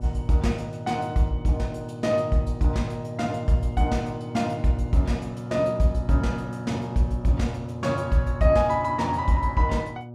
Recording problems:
hum; 60 Hz, harmonics up to 960 Hz, SNR 11 dB

